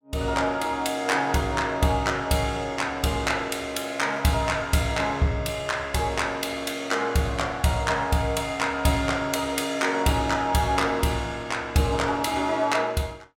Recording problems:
none

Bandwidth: 18 kHz